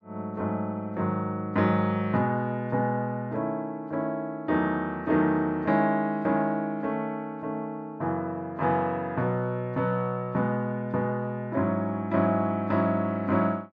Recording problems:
none

